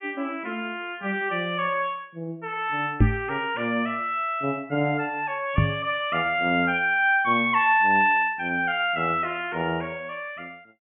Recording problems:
treble cut off; nothing above 3.1 kHz
microphone bump; at 3 s and at 5.5 s; peak +9 dB vs average level

